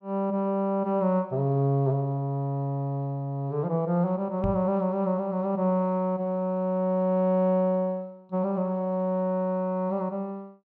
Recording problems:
microphone thump; at 4.5 s; peak +1 dB vs average level

